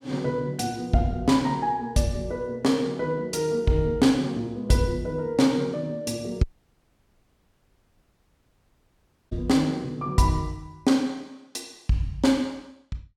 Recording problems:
dropout; at 6.5 s for 3 s

